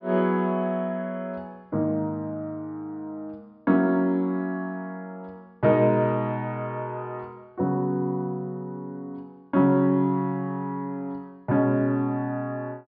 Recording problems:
treble cut off; nothing above 5.5 kHz

